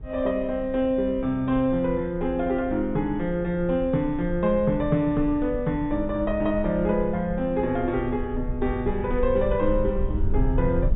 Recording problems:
low-pass filter; nothing above 4 kHz
rumble; below 68 Hz, SNR 10 dB

